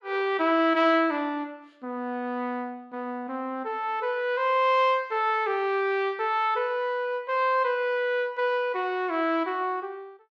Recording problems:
none

